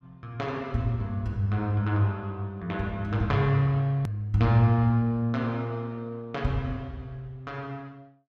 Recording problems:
edit click; at 4 s

